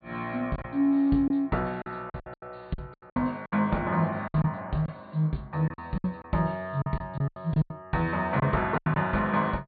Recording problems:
low-pass filter; nothing above 4.5 kHz
lost packets; 12% of the sound replaced, filled with silence

